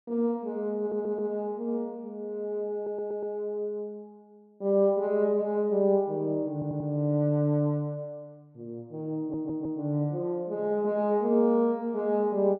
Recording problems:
stutter; 4 times, first at 1 s

